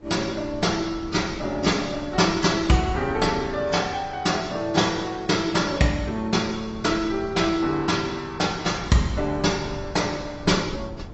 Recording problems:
lossy compression; AAC, log-spectral distance 4 dB, nothing above 6.5 kHz
wind on the microphone; below 240 Hz, SNR 17 dB

